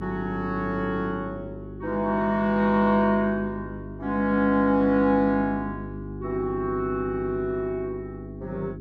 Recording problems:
electrical hum; 50 Hz, harmonics up to 400 Hz, SNR 12 dB

